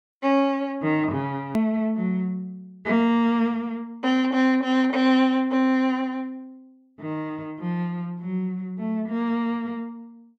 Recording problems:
edit click; at 1.5 s

